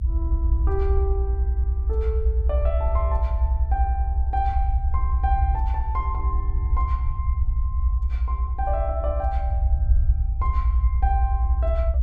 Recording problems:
low-frequency rumble; below 68 Hz, SNR -7 dB

